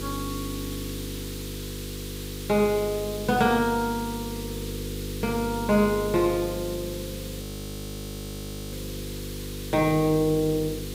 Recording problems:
hum; 50 Hz, harmonics up to 500 Hz, SNR 10 dB
hiss; slope +2 dB per octave, SNR 13 dB
audio freezing; at 7.5 s for 1.5 s

